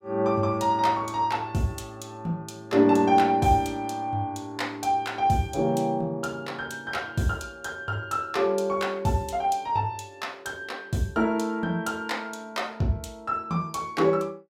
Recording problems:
none

